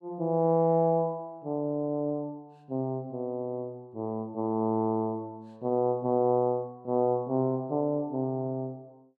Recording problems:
none

